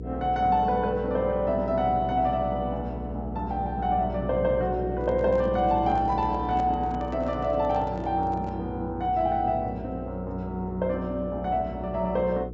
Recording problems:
treble cut off; nothing above 8 kHz
electrical hum; 60 Hz, harmonics up to 480 Hz, SNR 10 dB
handling noise; from 5 to 8.5 s; peak -9 dB vs average level

